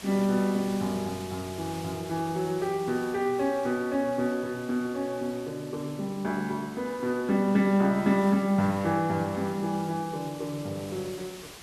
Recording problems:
hiss; slope -2 dB per octave, SNR 17 dB

